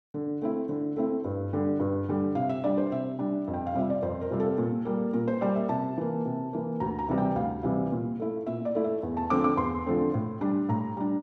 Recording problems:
none

